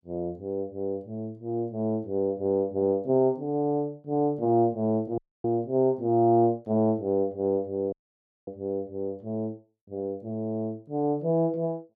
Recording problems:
dropout; at 5 s and at 8 s for 0.5 s

